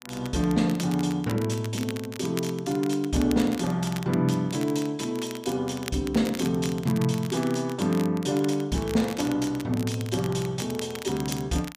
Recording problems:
crackling; vinyl, SNR 15 dB

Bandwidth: 15 kHz